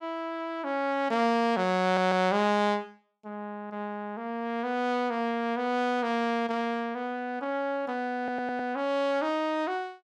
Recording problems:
audio stuttering; at 2 s and at 8 s

